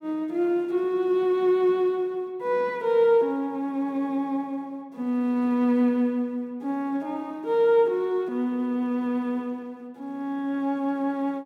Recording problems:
none

